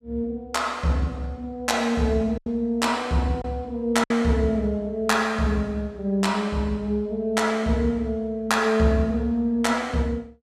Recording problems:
lost packets; 1.6% of the sound replaced, filled with silence

